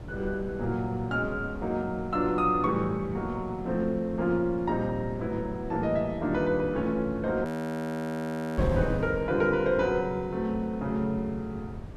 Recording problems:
wind on the microphone; below 220 Hz, SNR 11 dB
frozen audio; at 7.5 s for 1 s

